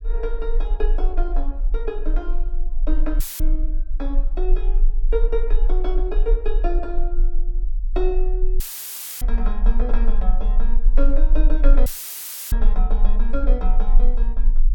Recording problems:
rumble; below 34 Hz, strongest tone 24 Hz, SNR -7 dB
dropout; at 3 s, at 8.5 s for 0.5 s and at 12 s for 0.5 s; filled with static

